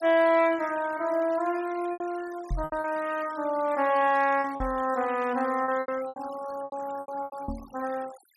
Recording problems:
denoising artefacts; signal-to-artefact ratio 20 dB
lost packets; 9% of the sound replaced, filled with repeated pitch periods
microphone thump; at 2.5 s, at 4.5 s and at 7.5 s; peak -1 dB vs average level

